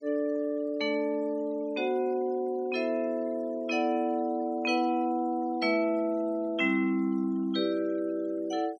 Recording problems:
noise reduction artefacts; signal-to-artefact ratio 26 dB

